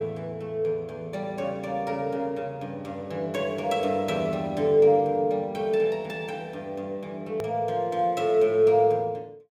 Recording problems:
edit click; at 7.5 s

